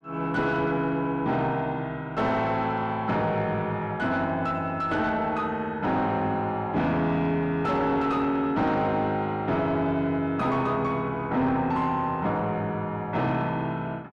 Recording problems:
distorted audio; soft clipping, signal-to-distortion ratio 11 dB

